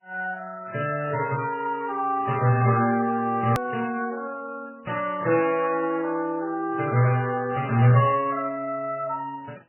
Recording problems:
lossy compression; Vorbis, then MP3, log-spectral distance 3 dB
edit click; at 3.5 s

